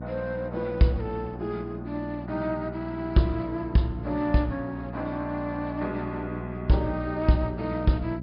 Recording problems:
treble cut off; nothing above 5.5 kHz
hum; 60 Hz, harmonics up to 660 Hz, SNR 9 dB

